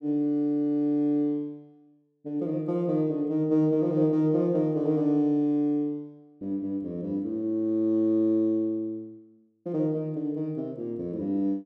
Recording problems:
none

